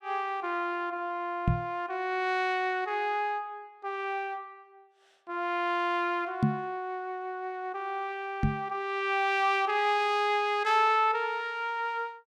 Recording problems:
microphone thump; at 1.5 s, at 6.5 s and at 8.5 s; peak +8 dB vs average level

